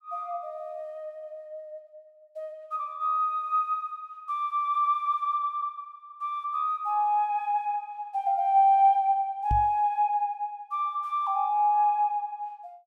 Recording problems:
knock on the microphone; at 9.5 s; peak +1 dB vs average level

